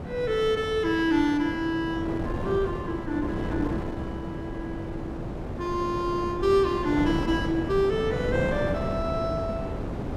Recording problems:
wind noise; below 470 Hz, SNR 6 dB

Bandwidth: 14.5 kHz